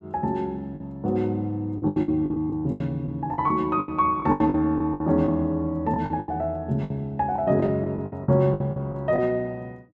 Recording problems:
packet loss; 13% of the sound replaced, filled with the last packet

